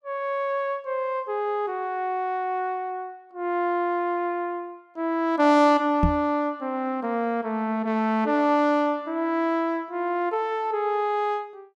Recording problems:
microphone bump; at 6 s; peak +6 dB vs average level

